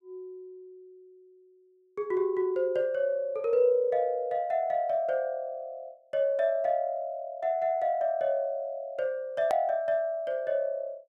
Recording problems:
click at an edit; at 9.5 s

